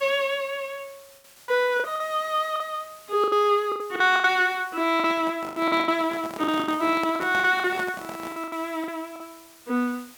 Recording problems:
hiss; slope 0 dB per octave, SNR 23 dB
packet loss; 12% of the sound replaced, filled with the last packet
microphone handling noise; from 5 to 8.5 s; peak -5 dB vs average level

